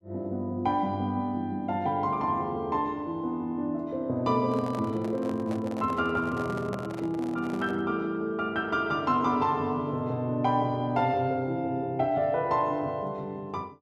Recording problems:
handling noise; from 4.5 to 8 s; peak -5 dB vs average level

